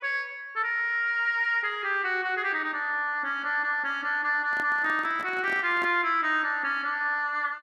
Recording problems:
handling noise; from 4.5 to 6 s; peak -10 dB vs average level

